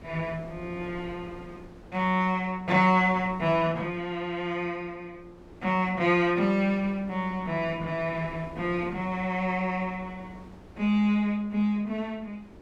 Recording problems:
wind noise; below 510 Hz, SNR 21 dB

